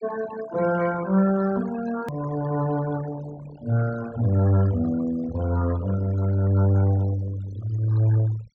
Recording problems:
treble cut off; nothing above 8 kHz
denoising artefacts; signal-to-artefact ratio 17 dB
click at an edit; at 2 s

